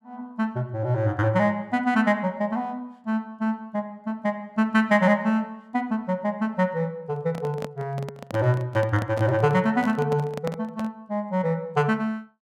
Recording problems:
handling noise; from 7 to 11 s; peak -3 dB vs average level

